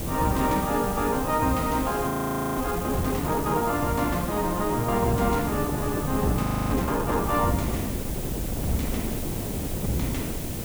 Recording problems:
hiss; slope 0 dB per octave, SNR 9 dB
wind noise; below 360 Hz, SNR 6 dB
frozen audio; at 2 s and at 6.5 s

